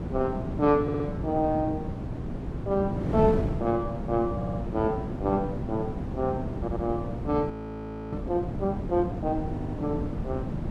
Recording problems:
hum; 60 Hz, harmonics up to 420 Hz, SNR 15 dB
wind on the microphone; below 290 Hz, SNR 4 dB
stutter; 4 times, first at 1 s
frozen audio; at 7.5 s for 0.5 s

